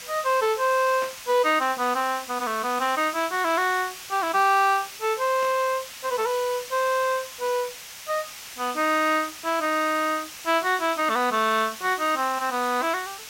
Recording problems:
hiss; slope +3 dB per octave, SNR 13 dB
static burst; at 1 s and at 5.5 s; peak -11 dB vs average level

